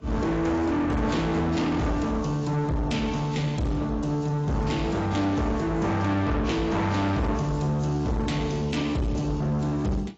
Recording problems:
lossy compression; AAC, log-spectral distance 3 dB, nothing above 7.3 kHz
distortion; soft clipping, signal-to-distortion ratio 7 dB

